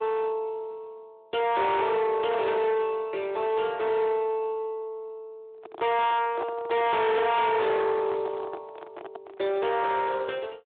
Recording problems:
telephone audio; 340 Hz to 4 kHz, Speex
distorted audio; hard clipping, uneven, signal-to-distortion ratio 7 dB
handling noise; from 5.5 to 9.5 s; peak -5 dB vs average level

